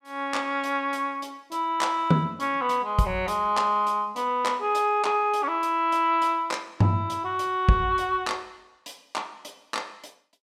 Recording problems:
none

